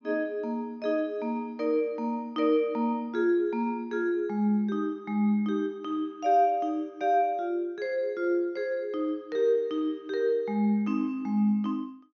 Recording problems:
low-pass filter; nothing above 6.7 kHz

